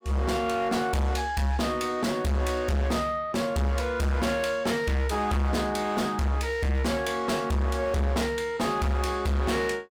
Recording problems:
distortion; hard clipping, signal-to-distortion ratio 7 dB

